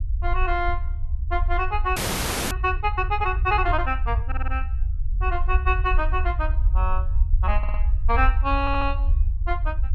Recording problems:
rumble; below 64 Hz, SNR 0 dB
audio freezing; at 2 s for 0.5 s
stutter; at 4.5 s, at 7.5 s and at 8.5 s

